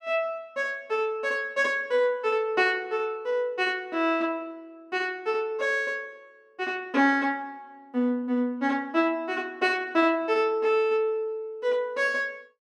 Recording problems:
none

